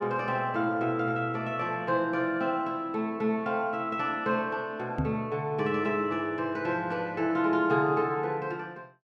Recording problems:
microphone bump; at 5 s; peak +3 dB vs average level

